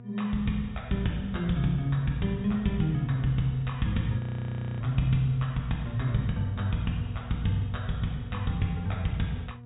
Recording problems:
low-pass filter; nothing above 4 kHz
hum; 60 Hz, harmonics up to 960 Hz, SNR 14 dB
frozen audio; at 4 s for 0.5 s

